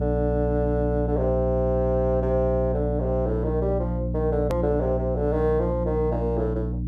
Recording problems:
hum; 60 Hz, harmonics up to 300 Hz, SNR 2 dB
edit click; at 4.5 s

